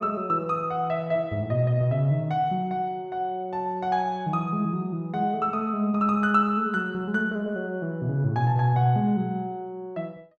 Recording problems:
none

